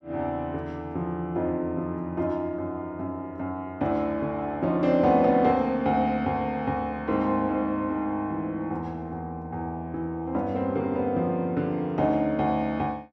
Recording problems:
none

